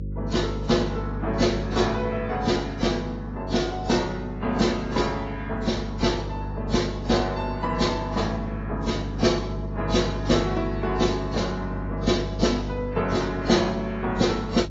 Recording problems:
lossy compression; AAC, then AAC, log-spectral distance 3 dB, nothing above 7.1 kHz
hum; 50 Hz, harmonics up to 550 Hz, SNR 8 dB

